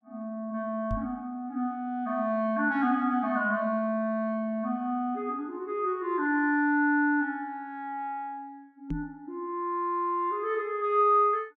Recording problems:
microphone bump; at 1 s and at 9 s; peak -2 dB vs average level

